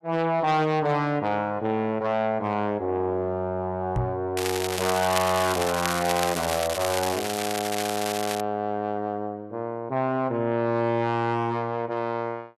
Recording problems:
distortion; soft clipping, signal-to-distortion ratio 11 dB
knock on the microphone; at 4 s; peak +3 dB vs average level
crackle; from 4.5 to 8.5 s; loose cable, SNR 5 dB

